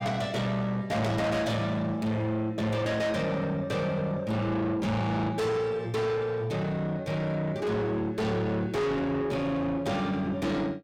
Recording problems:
distorted audio; soft clipping, signal-to-distortion ratio 7 dB

